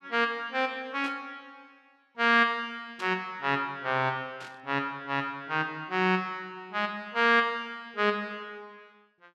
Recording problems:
burst of static; at 1 s, at 3 s and at 4.5 s; peak -10 dB vs average level

